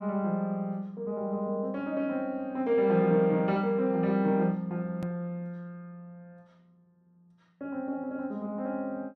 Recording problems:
hard cut with a click; at 5 s

